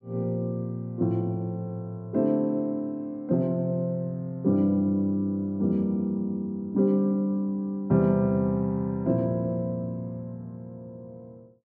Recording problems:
none

